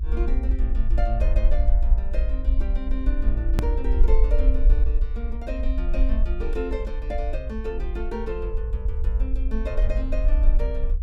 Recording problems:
low-frequency rumble; below 52 Hz, SNR -8 dB
edit click; at 3.5 s

